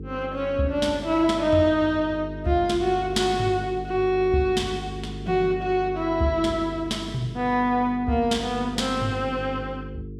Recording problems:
hum; 50 Hz, harmonics up to 450 Hz, SNR 13 dB

